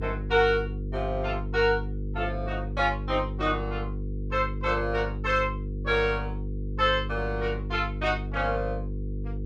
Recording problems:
hum; 50 Hz, harmonics up to 500 Hz, SNR 6 dB

